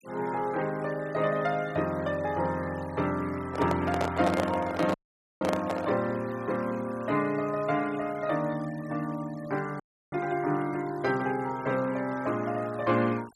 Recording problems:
denoising artefacts; signal-to-artefact ratio 20 dB
microphone handling noise; from 3.5 to 6 s; peak +3 dB vs average level
audio cutting out; at 5 s and at 10 s

